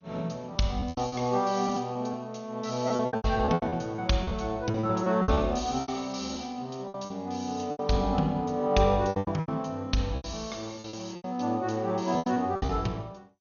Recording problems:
lossy compression; MP2, log-spectral distance 5 dB, nothing above 6.7 kHz
packet loss; 13% of the sound replaced, filled with repeated pitch periods

